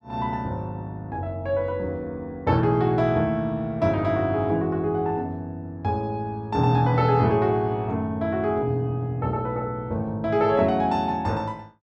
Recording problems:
none

